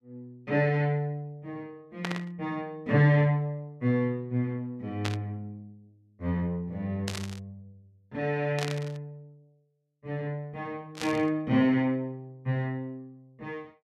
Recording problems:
static burst; 5 times, first at 2 s; peak 0 dB vs average level

